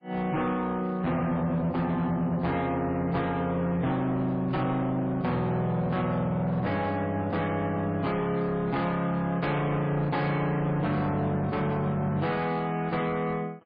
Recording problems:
lossy codec; MP3, log-spectral distance 2 dB, nothing above 4.4 kHz
distorted audio; hard clipping, signal-to-distortion ratio 10 dB

